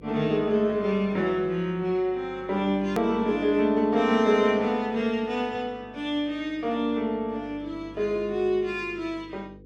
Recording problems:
hum; 50 Hz, harmonics up to 500 Hz, SNR 23 dB
hard cut with a click; at 3 s

